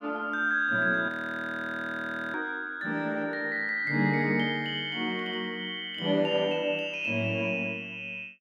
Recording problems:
audio freezing; at 1 s for 1 s

